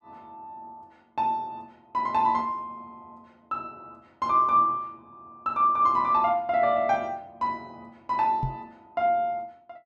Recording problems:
microphone thump; at 8.5 s; peak -1 dB vs average level

